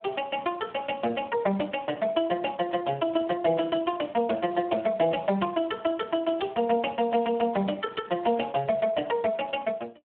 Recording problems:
telephone audio; 240 Hz to 3.4 kHz, Speex

